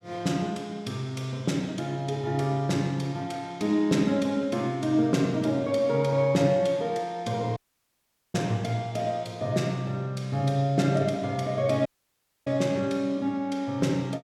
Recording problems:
dropout; at 7.5 s for 1 s and at 12 s for 0.5 s

